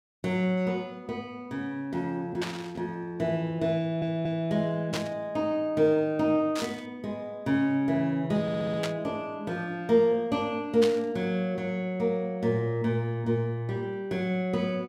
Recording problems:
static burst; 5 times, first at 2.5 s; peak 0 dB vs average level
audio stuttering; at 4 s and at 8.5 s

